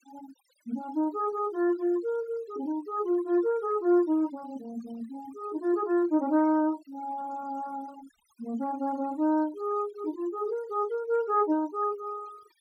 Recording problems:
noise reduction artefacts; signal-to-artefact ratio 24 dB

